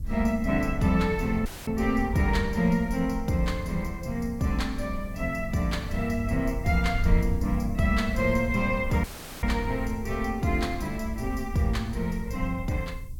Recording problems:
hiss; SNR 29 dB
wind on the microphone; below 76 Hz, SNR 8 dB
audio cutting out; at 1.5 s and at 9 s

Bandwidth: 17 kHz